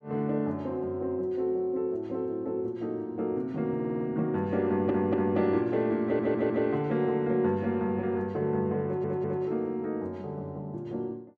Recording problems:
stutter; 4 times, first at 4 s

